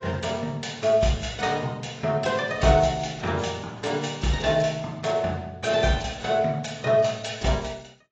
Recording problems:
codec artefacts; AAC, log-spectral distance 4 dB, nothing above 7.3 kHz

